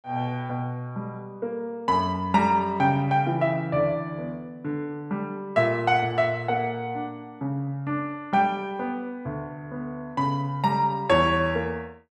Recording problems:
none

